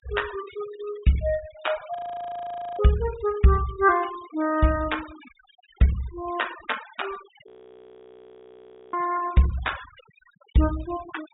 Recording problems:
low-pass filter; nothing above 4 kHz
noise reduction artefacts; signal-to-artefact ratio 17 dB
frozen audio; at 2 s for 1 s and at 7.5 s for 1.5 s

